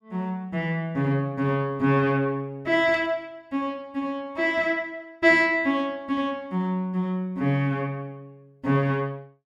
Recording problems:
burst of static; at 3 s; peak -13 dB vs average level

